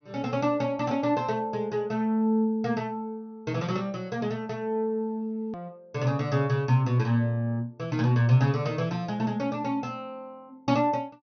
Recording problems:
low-pass filter; nothing above 6.2 kHz
edit click; at 5.5 s

